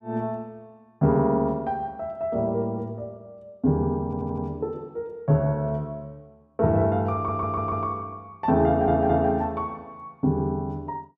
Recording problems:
stutter; at 4 s, at 7 s and at 8.5 s

